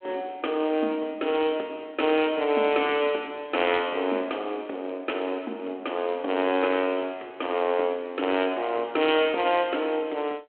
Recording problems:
phone line; 240 Hz to 3.3 kHz, G.726

